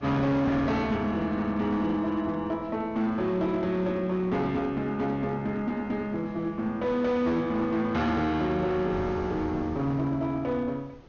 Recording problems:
low-pass filter; nothing above 6.8 kHz
distorted audio; hard clipping, uneven, signal-to-distortion ratio 11 dB
wind noise; below 560 Hz, SNR 21 dB

